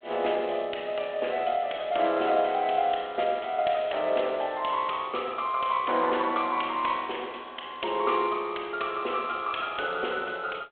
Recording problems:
telephone audio; 300 Hz to 3.4 kHz, G.726

